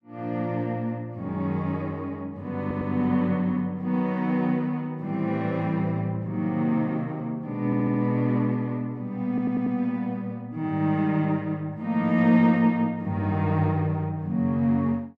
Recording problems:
audio stuttering; at 2.5 s, at 7.5 s and at 9.5 s

